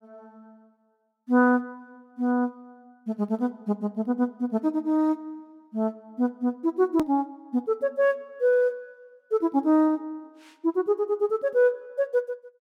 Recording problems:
edit click; at 7 s

